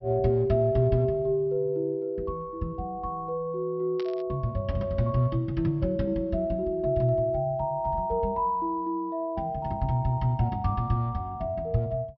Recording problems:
low-pass filter; nothing above 5.7 kHz
burst of static; at 4 s; peak -11 dB vs average level

